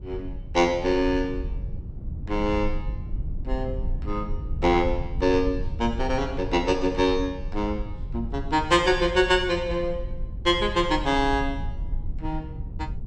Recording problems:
rumble; below 74 Hz, SNR 9 dB

